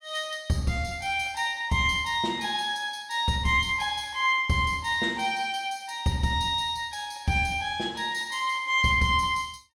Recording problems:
none

